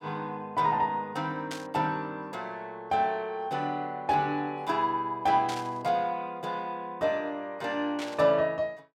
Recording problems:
burst of static; at 1.5 s, at 5.5 s and at 8 s; peak -4 dB vs average level

